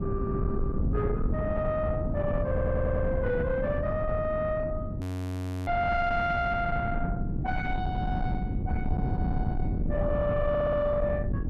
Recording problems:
distorted audio; soft clipping, signal-to-distortion ratio 10 dB
rumble; below 200 Hz, SNR 2 dB
audio stuttering; at 2.5 s and at 10 s
audio freezing; at 5 s for 0.5 s

